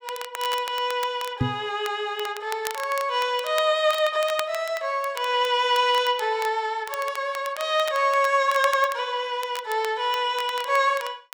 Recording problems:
crackle; vinyl, SNR 15 dB
microphone bump; at 1.5 s; peak +3 dB vs average level

